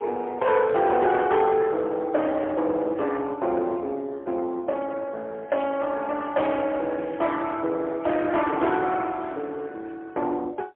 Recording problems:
phone line; 320 Hz to 3.7 kHz, AMR-NB, then MP3
distorted audio; soft clipping, signal-to-distortion ratio 13 dB

